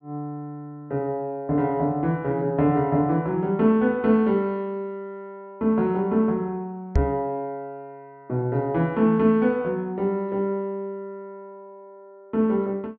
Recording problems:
microphone thump; at 7 s; peak +6 dB vs average level

